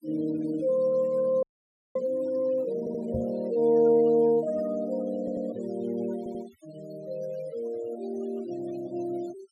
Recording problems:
denoising artefacts; signal-to-artefact ratio 22 dB
frozen audio; at 1.5 s for 0.5 s
audio stuttering; at 3 s, at 5 s and at 6 s
knock on the microphone; at 3 s; peak -2 dB vs average level

